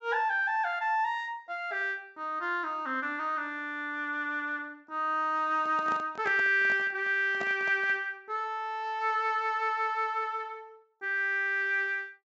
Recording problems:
treble missing; nothing above 8 kHz
handling noise; from 5.5 to 8 s; peak -5 dB vs average level

